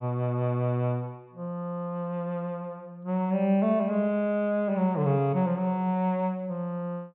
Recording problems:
low-pass filter; nothing above 4 kHz

